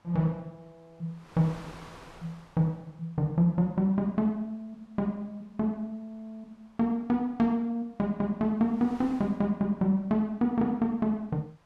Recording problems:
wind on the microphone; below 1.8 kHz, SNR 26 dB

